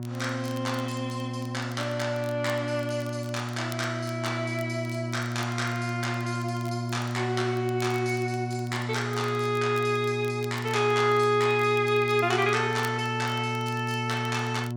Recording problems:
hum; 60 Hz, harmonics up to 960 Hz, SNR 5 dB
crackle; vinyl, SNR 22 dB

